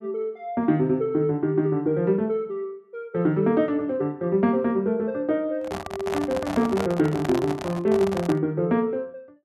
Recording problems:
handling noise; from 5.5 to 8.5 s; peak -1 dB vs average level

